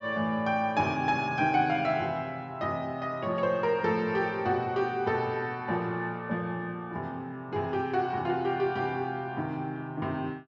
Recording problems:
treble missing; nothing above 8 kHz

